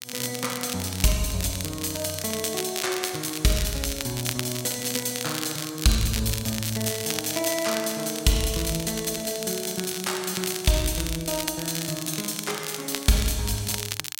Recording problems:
crackle; vinyl, SNR 6 dB

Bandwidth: 16.5 kHz